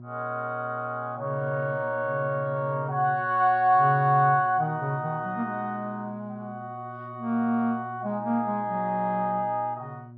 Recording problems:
treble missing; nothing above 5.5 kHz
electrical hum; 60 Hz, harmonics up to 600 Hz, SNR 18 dB

